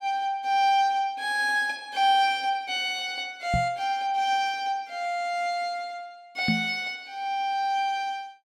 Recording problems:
microphone thump; at 3.5 s and at 6.5 s; peak +4 dB vs average level

